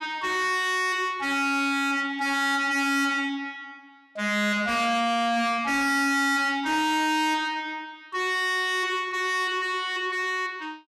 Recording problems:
distortion; soft clipping, signal-to-distortion ratio 7 dB

